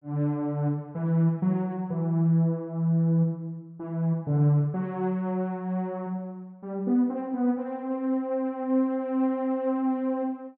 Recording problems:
none

